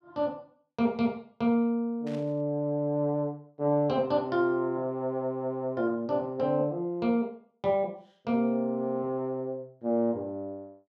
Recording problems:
burst of static; at 2 s; peak -16 dB vs average level

